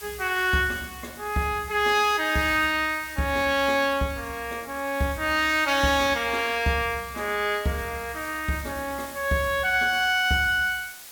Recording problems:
hiss; slope +1 dB per octave, SNR 17 dB

